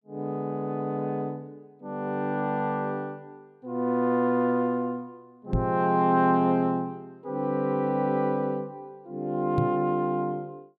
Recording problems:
microphone thump; at 5.5 s and at 9.5 s; peak +4 dB vs average level

